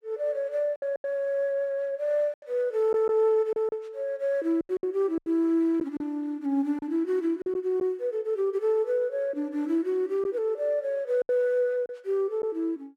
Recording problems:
lost packets; 6% of the sound replaced, filled with silence

